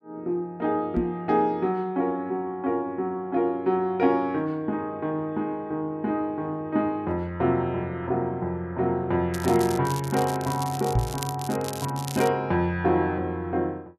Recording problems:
knock on the microphone; at 1 s and at 11 s; peak +6 dB vs average level
crackle; from 9.5 to 12 s; loose cable, SNR 12 dB

